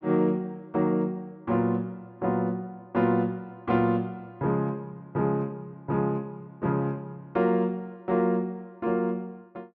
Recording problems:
none

